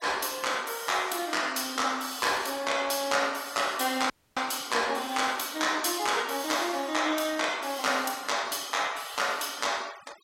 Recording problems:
denoising artefacts; signal-to-artefact ratio 20 dB
audio cutting out; at 4 s

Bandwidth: 16 kHz